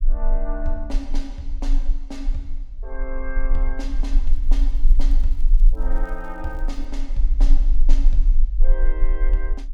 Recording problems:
rumble; below 34 Hz, strongest tone 22 Hz, SNR -11 dB
crackling; from 4.5 to 7 s; loose cable, SNR 25 dB

